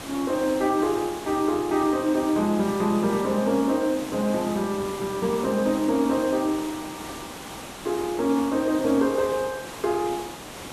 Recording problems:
background hiss; slope -4 dB per octave, SNR 13 dB

